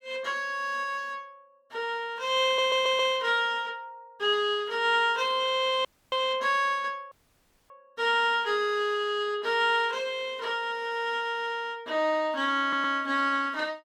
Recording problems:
stutter; at 2.5 s and at 13 s
audio cutting out; at 6 s and at 7 s for 0.5 s

